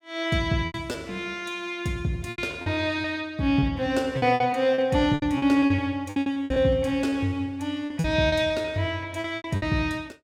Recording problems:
packet loss; 12% of the sound replaced, filled with repeated pitch periods

